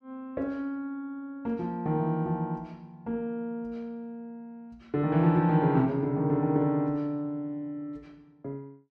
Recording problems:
none

